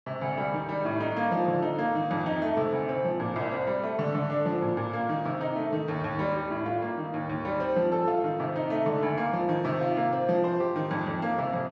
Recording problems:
none

